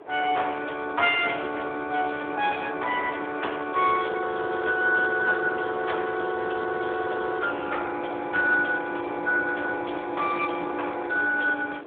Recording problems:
telephone audio; 260 Hz to 3.5 kHz, Speex
wind on the microphone; below 800 Hz, SNR 16 dB

